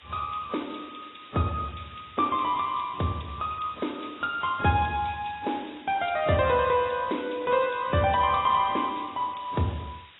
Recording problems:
codec artefacts; AAC, then MP2, log-spectral distance 10 dB, nothing above 3.7 kHz
background hiss; SNR 23 dB

